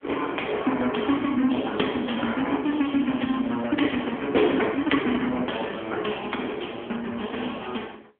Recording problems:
telephone audio; 220 Hz to 3.4 kHz, AMR-NB

